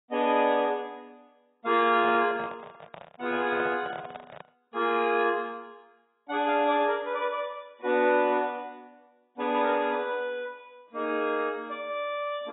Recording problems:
codec artefacts; AAC, log-spectral distance 3 dB, nothing above 3.5 kHz
handling noise; from 2 to 4.5 s; peak -6 dB vs average level

